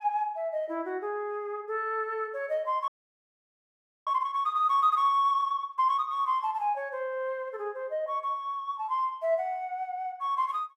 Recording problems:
audio freezing; at 3 s for 1 s

